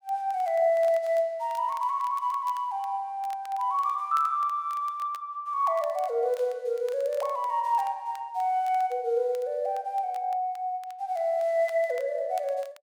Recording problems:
crackling; vinyl, SNR 26 dB

